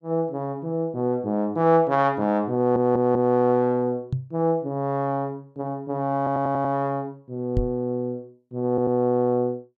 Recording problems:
stutter; at 2.5 s, at 6 s and at 8.5 s
knock on the microphone; at 4 s and at 7.5 s; peak +3 dB vs average level

